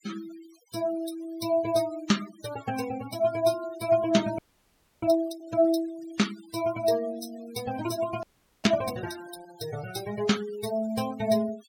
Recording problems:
denoising artefacts; signal-to-artefact ratio 15 dB
frozen audio; at 4.5 s for 0.5 s and at 8 s

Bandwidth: 17 kHz